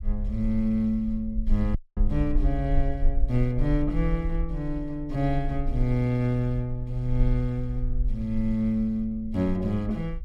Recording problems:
low-frequency rumble; below 48 Hz, SNR 5 dB
audio cutting out; at 2 s

